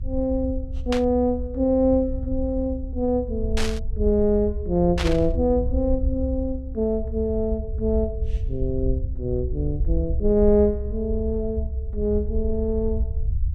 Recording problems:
low-frequency rumble; below 68 Hz, SNR 5 dB
burst of static; at 1 s, at 3.5 s and at 5 s; peak 0 dB vs average level

